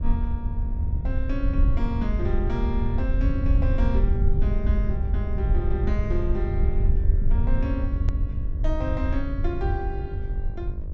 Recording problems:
treble cut off; nothing above 8 kHz
hum; 50 Hz, harmonics up to 1.2 kHz, SNR 14 dB
rumble; below 76 Hz, SNR -6 dB
click at an edit; at 8 s

